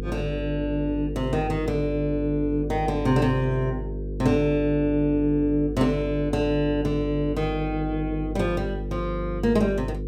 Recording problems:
hum; 50 Hz, harmonics up to 500 Hz, SNR 8 dB

